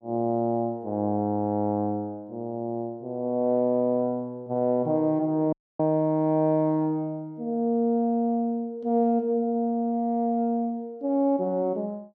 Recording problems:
audio cutting out; at 5.5 s

